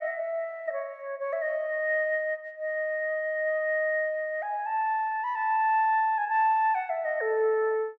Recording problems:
none

